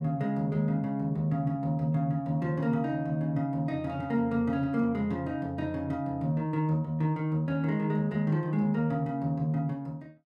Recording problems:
none

